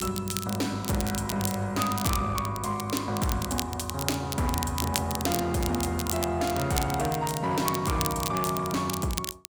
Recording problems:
distorted audio; hard clipping, signal-to-distortion ratio 11 dB
crackling; vinyl, SNR 6 dB

